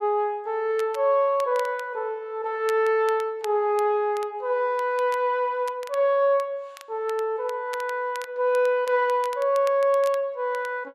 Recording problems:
crackle; vinyl, SNR 22 dB

